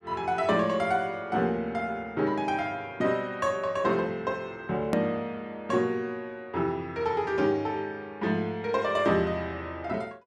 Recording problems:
hard cut with a click; at 5 s

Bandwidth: 12.5 kHz